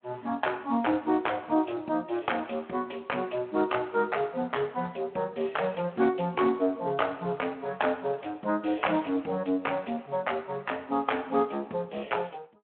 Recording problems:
phone line; 220 Hz to 3.2 kHz, Speex

